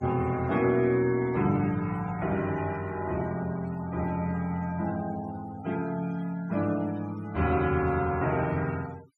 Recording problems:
noise reduction artefacts; signal-to-artefact ratio 19 dB

